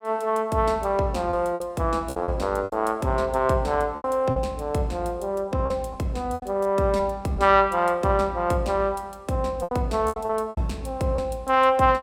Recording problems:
lost packets; 7% of the sound replaced, filled with repeated pitch periods

